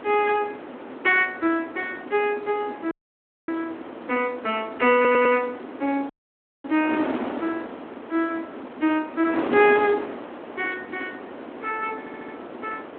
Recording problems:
telephone audio; 220 Hz to 3.4 kHz, Speex
wind noise; below 870 Hz, SNR 10 dB
dropout; at 3 s for 0.5 s and at 6 s for 0.5 s
audio stuttering; at 5 s and at 12 s

